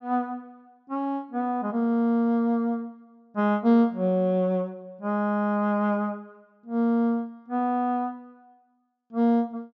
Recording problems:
treble cut off; nothing above 8 kHz

